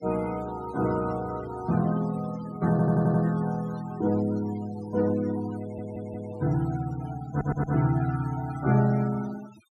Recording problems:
noise reduction artefacts; signal-to-artefact ratio 17 dB
stutter; at 2.5 s, at 5.5 s and at 7.5 s

